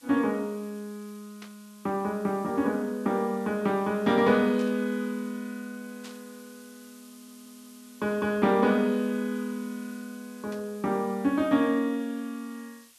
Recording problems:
hiss; slope +2 dB per octave, SNR 25 dB
burst of static; 4 times, first at 1.5 s; peak -13 dB vs average level
audio stuttering; at 7 s

